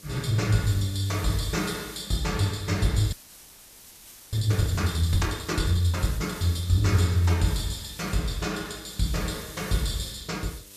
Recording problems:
hum; 50 Hz, harmonics up to 1.7 kHz, SNR 31 dB
hiss; SNR 17 dB
frozen audio; at 3 s for 1 s

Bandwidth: 14.5 kHz